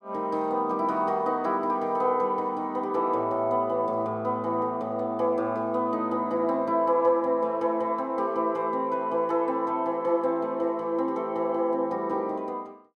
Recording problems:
none

